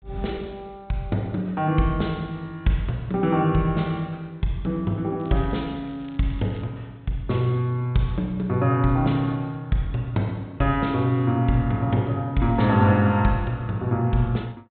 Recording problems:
low-pass filter; nothing above 4 kHz
crackling; from 5 to 6.5 s; loose cable, SNR 29 dB

